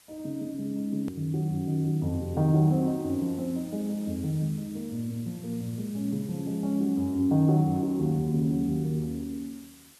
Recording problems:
background hiss; slope +1 dB per octave, SNR 23 dB
hard cut with a click; at 1 s

